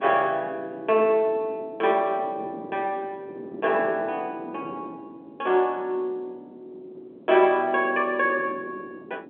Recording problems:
telephone audio; 260 Hz to 3.4 kHz, G.711
wind on the microphone; below 440 Hz, SNR 18 dB

